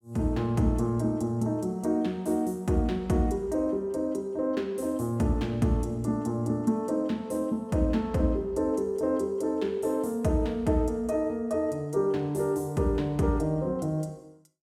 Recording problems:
none

